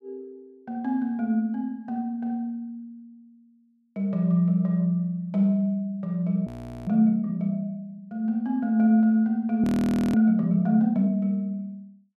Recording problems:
frozen audio; at 6.5 s and at 9.5 s for 0.5 s

